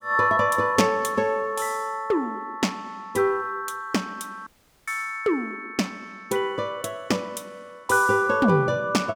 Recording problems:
dropout; at 4.5 s

